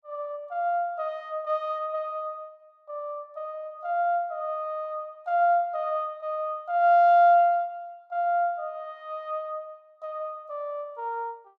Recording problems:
none

